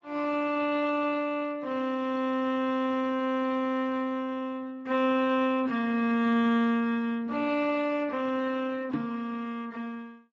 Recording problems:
lossy codec; Speex, log-spectral distance 2 dB
microphone bump; at 9 s; peak +1 dB vs average level

